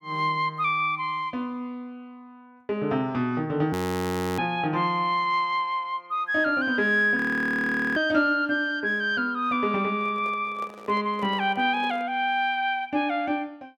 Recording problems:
frozen audio; at 3.5 s for 0.5 s and at 7 s for 1 s
microphone handling noise; from 10 to 12 s; peak -12 dB vs average level

